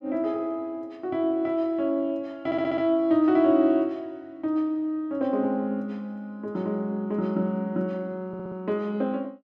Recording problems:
stutter; at 2.5 s and at 8.5 s

